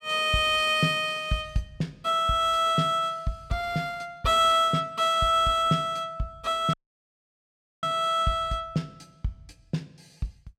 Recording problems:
dropout; at 6.5 s for 1 s

